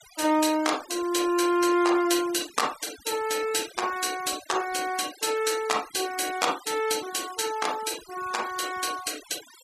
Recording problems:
denoising artefacts; signal-to-artefact ratio 15 dB

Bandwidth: 14.5 kHz